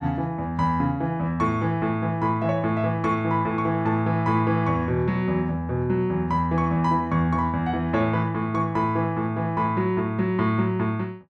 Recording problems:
none

